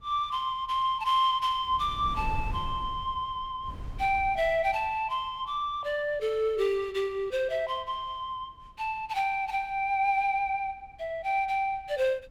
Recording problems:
wind noise; below 100 Hz, SNR 13 dB

